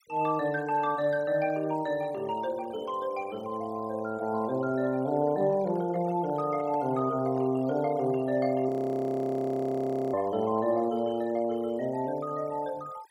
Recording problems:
noise reduction artefacts; signal-to-artefact ratio 24 dB
microphone handling noise; from 5.5 to 7.5 s; peak -12 dB vs average level
audio freezing; at 8.5 s for 1.5 s

